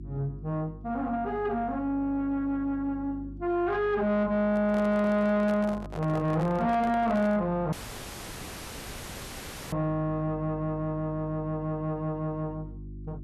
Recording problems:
distortion; soft clipping, signal-to-distortion ratio 11 dB
hum; 50 Hz, harmonics up to 350 Hz, SNR 15 dB
microphone handling noise; from 4.5 to 7.5 s; peak -4 dB vs average level
dropout; at 7.5 s for 2 s

